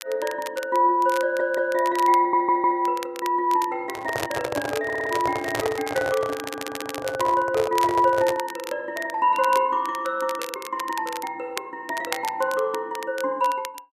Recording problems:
crackle; vinyl, SNR 14 dB
stutter; 4 times, first at 1 s
microphone handling noise; from 4 to 8.5 s; peak +2 dB vs average level

